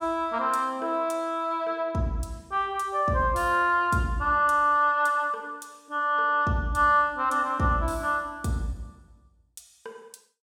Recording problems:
none

